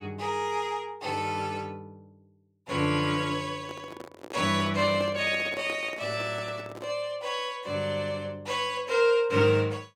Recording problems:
handling noise; from 3.5 to 7 s; peak -7 dB vs average level

